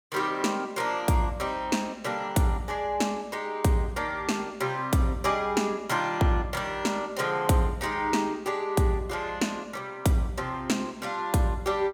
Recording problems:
none

